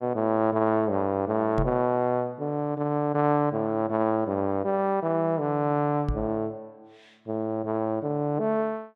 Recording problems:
microphone thump; at 1.5 s and at 6 s; peak +1 dB vs average level

